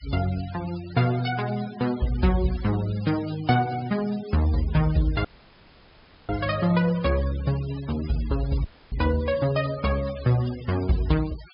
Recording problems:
treble missing; nothing above 5.5 kHz
noise reduction artefacts; signal-to-artefact ratio 18 dB
audio cutting out; at 5.5 s for 1 s and at 8.5 s

